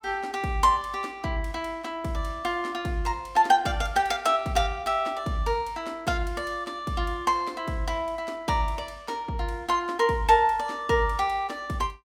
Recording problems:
none

